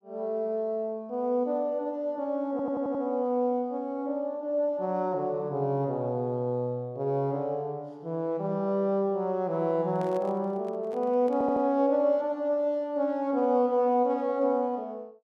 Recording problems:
stutter; at 2.5 s and at 11 s
microphone handling noise; from 10 to 12 s; peak -12 dB vs average level

